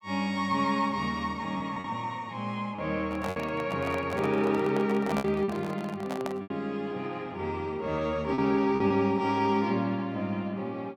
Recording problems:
lost packets; 4% of the sound replaced, filled with repeated pitch periods
handling noise; from 3 to 6.5 s; peak 0 dB vs average level

